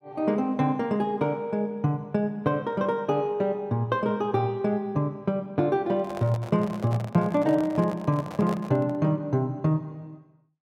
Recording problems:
handling noise; from 6 to 9 s; peak -6 dB vs average level

